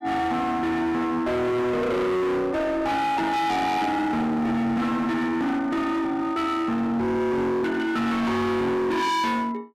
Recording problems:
distorted audio; hard clipping, signal-to-distortion ratio 6 dB

